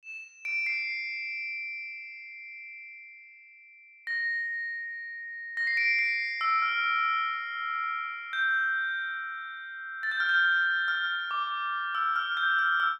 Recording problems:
none

